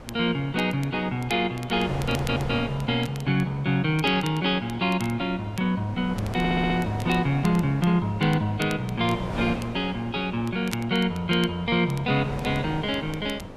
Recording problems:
wind on the microphone; below 660 Hz, SNR 13 dB
crackling; vinyl, SNR 20 dB
stutter; at 2 s and at 6.5 s

